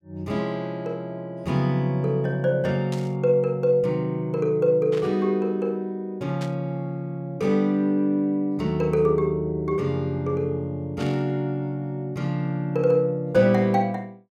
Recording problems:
static burst; 4 times, first at 3 s; peak -10 dB vs average level

